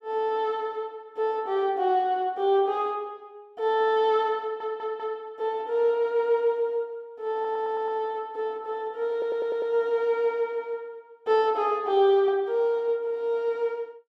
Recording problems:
stutter; at 4.5 s, at 7.5 s and at 9 s

